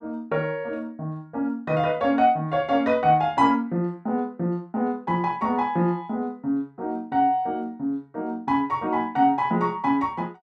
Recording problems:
none

